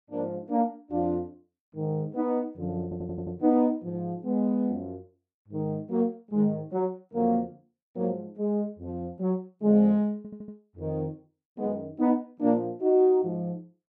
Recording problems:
audio stuttering; at 3 s and at 10 s

